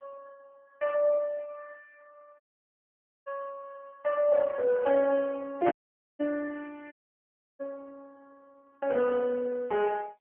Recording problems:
phone line; 260 Hz to 2.3 kHz, AMR-NB
dropout; at 2.5 s for 1 s, at 5.5 s and at 7 s for 0.5 s

